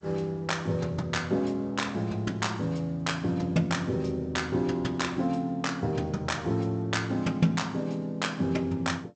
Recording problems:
lossy compression; G.722, log-spectral distance 2 dB, nothing above 7.8 kHz

